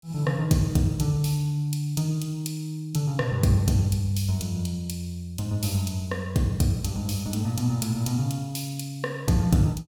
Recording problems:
none

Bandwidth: 17 kHz